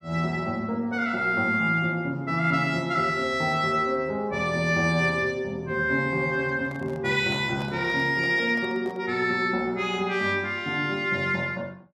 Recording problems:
microphone handling noise; from 6.5 to 9 s; peak -10 dB vs average level

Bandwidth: 14.5 kHz